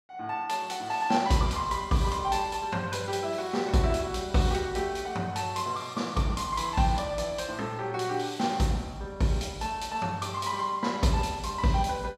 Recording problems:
none

